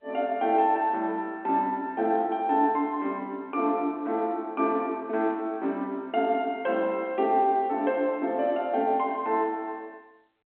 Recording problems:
telephone audio; 240 Hz to 3.5 kHz, G.711

